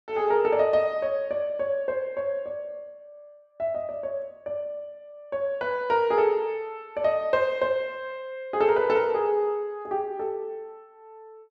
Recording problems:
none

